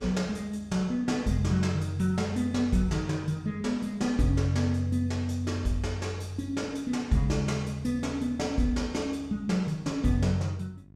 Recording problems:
hum; 50 Hz, harmonics up to 700 Hz, SNR 25 dB

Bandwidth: 14.5 kHz